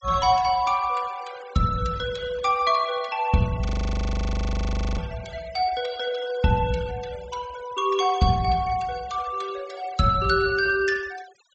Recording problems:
treble missing; nothing above 8 kHz
noise reduction artefacts; signal-to-artefact ratio 19 dB
audio freezing; at 3.5 s for 1.5 s

